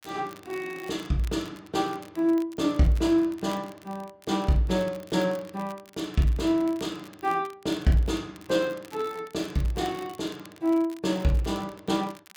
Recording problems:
crackle; vinyl, SNR 23 dB

